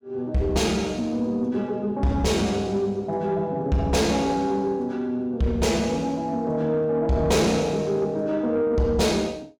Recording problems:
distorted audio; soft clipping, signal-to-distortion ratio 12 dB

